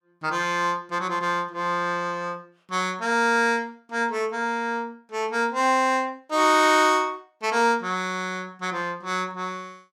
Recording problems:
none

